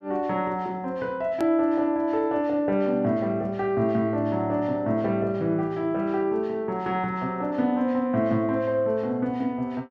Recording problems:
hard cut with a click; at 1.5 s

